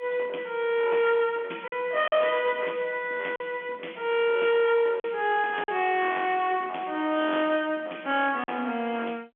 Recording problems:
telephone audio; 240 Hz to 3.7 kHz, G.711
distorted audio; hard clipping, signal-to-distortion ratio 13 dB
packet loss; 3% of the sound replaced, filled with silence

